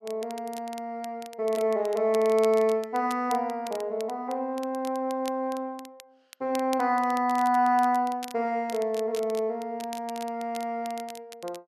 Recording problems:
crackling; vinyl, SNR 19 dB

